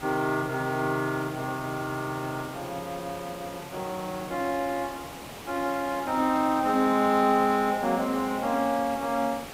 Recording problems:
background hiss; slope -4 dB per octave, SNR 13 dB

